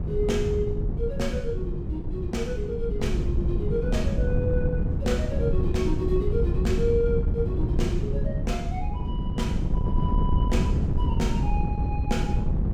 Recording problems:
wind noise; below 140 Hz, SNR -3 dB

